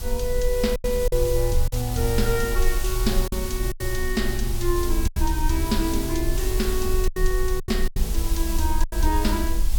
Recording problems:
hiss; SNR 8 dB
low-frequency rumble; below 46 Hz, SNR 2 dB
packet loss; 7% of the sound replaced, filled with silence

